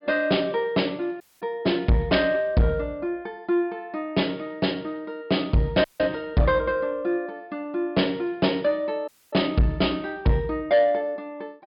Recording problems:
treble cut off; nothing above 5.5 kHz
distortion; soft clipping, signal-to-distortion ratio 7 dB
audio cutting out; at 1 s, at 6 s and at 9 s

